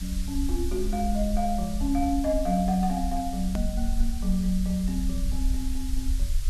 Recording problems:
background hiss; slope +3 dB per octave, SNR 14 dB
low-frequency rumble; below 54 Hz, SNR 4 dB
hard cut with a click; at 3.5 s

